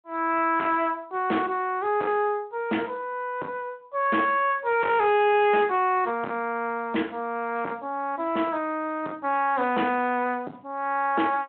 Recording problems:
phone line; 220 Hz to 3 kHz, Speex
distortion; soft clipping, signal-to-distortion ratio 10 dB

